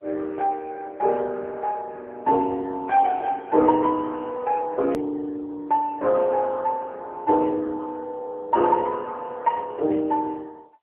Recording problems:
telephone audio; 260 Hz to 3.2 kHz, AMR-NB
edit click; at 5 s

